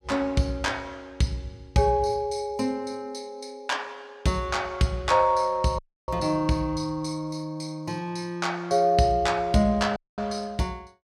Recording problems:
dropout; at 6 s and at 10 s

